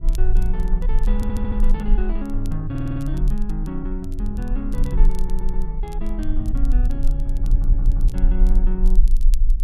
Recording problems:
rumble; below 38 Hz, strongest tone 26 Hz, SNR -6 dB
wind on the microphone; below 98 Hz, SNR 6 dB
crackling; vinyl, SNR 21 dB
audio stuttering; 4 times, first at 1 s

